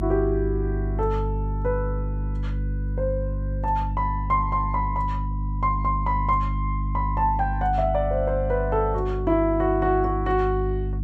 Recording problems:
hum; 50 Hz, harmonics up to 300 Hz, SNR 3 dB

